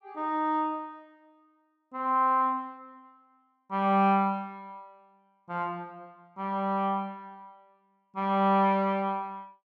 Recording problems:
none

